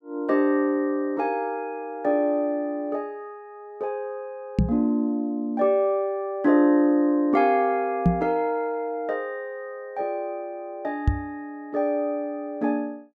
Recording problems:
microphone thump; at 4.5 s, at 8 s and at 11 s; peak +8 dB vs average level

